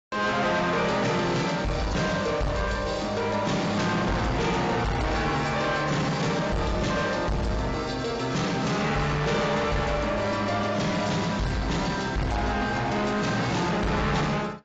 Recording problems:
codec artefacts; AAC, log-spectral distance 4 dB, nothing above 7.6 kHz
distorted audio; soft clipping, signal-to-distortion ratio 7 dB

